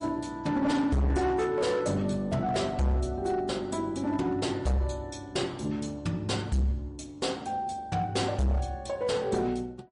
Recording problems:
codec artefacts; MP3, log-spectral distance 2 dB, nothing above 10.4 kHz
distortion; hard clipping, signal-to-distortion ratio 7 dB

